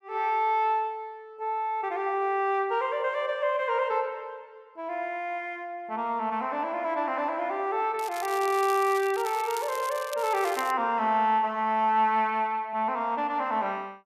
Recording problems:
crackling; from 8 to 11 s; loose cable, SNR 14 dB

